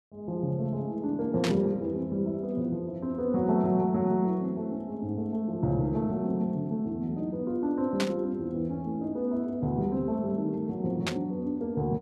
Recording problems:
static burst; at 1.5 s, at 8 s and at 11 s; peak +3 dB vs average level

